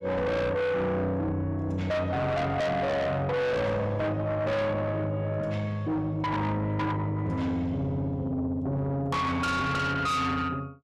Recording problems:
distorted audio; soft clipping, signal-to-distortion ratio 6 dB

